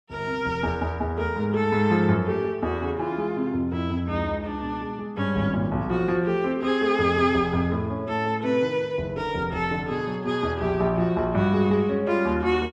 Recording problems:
none

